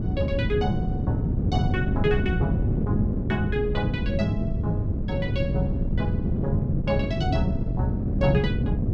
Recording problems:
wind noise; below 210 Hz, SNR -3 dB

